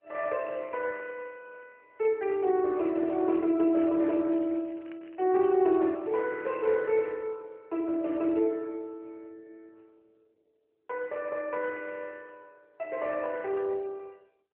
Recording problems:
phone line; 280 Hz to 3.3 kHz, AMR-NB
crackle; at 4.5 s; loose cable, SNR 30 dB

